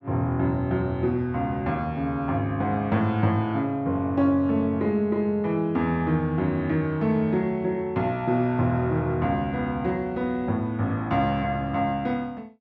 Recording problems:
none

